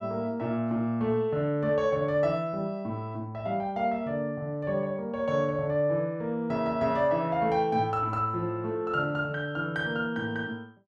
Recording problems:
none

